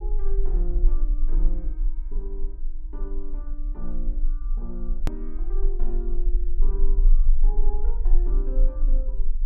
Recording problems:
rumble; below 32 Hz, strongest tone 22 Hz, SNR -14 dB
edit click; at 5 s

